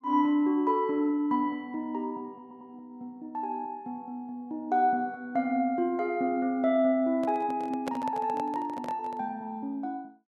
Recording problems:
stutter; at 2.5 s
handling noise; from 7 to 9 s; peak -2 dB vs average level

